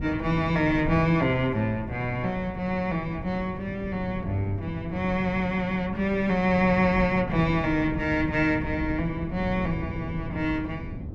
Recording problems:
wind noise; below 220 Hz, SNR 9 dB

